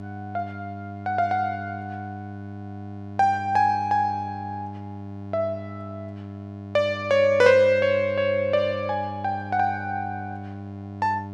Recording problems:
hum; 50 Hz, harmonics up to 1.1 kHz, SNR 13 dB

